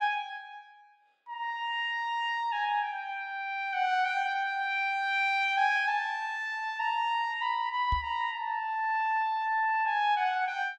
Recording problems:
knock on the microphone; at 8 s; peak -1 dB vs average level

